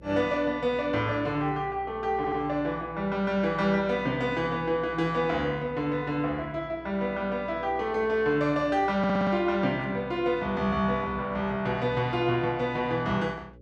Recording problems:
hum; 60 Hz, harmonics up to 540 Hz, SNR 22 dB
stutter; at 2 s and at 9 s

